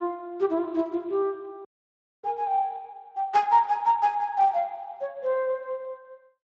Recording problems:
lossy compression; Speex, log-spectral distance 2 dB
audio cutting out; at 1.5 s for 0.5 s

